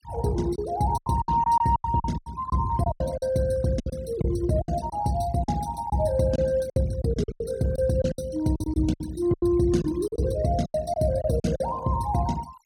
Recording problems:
noise reduction artefacts; signal-to-artefact ratio 21 dB
packet loss; 13% of the sound replaced, filled with silence

